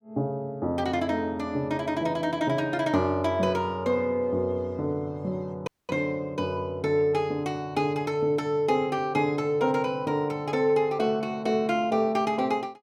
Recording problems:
dropout; at 5.5 s

